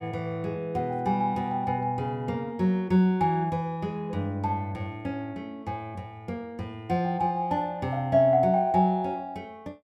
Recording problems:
none

